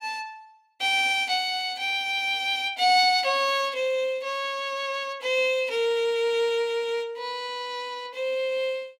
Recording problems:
none

